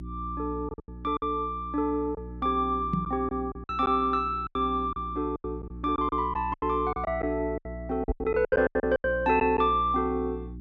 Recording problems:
hum; 60 Hz, harmonics up to 360 Hz, SNR 12 dB
lost packets; 12% of the sound replaced, filled with silence
microphone bump; at 3 s and at 8 s; peak +3 dB vs average level

